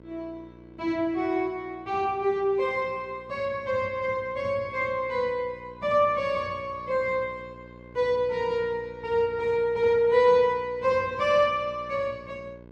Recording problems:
hum; 60 Hz, harmonics up to 1.1 kHz, SNR 23 dB

